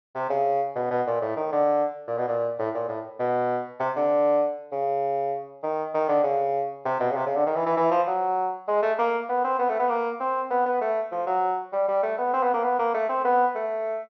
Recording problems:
treble missing; nothing above 6 kHz

